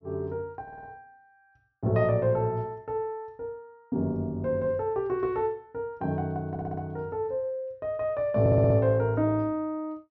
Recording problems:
treble cut off; nothing above 6.1 kHz
audio stuttering; at 0.5 s, at 6.5 s and at 8.5 s

